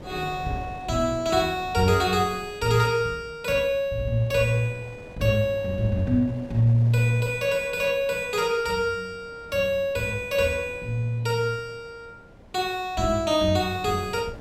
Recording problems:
wind noise; below 600 Hz, SNR 21 dB

